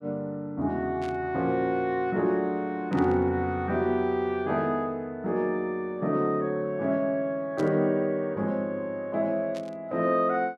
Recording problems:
burst of static; 4 times, first at 1 s; peak -12 dB vs average level

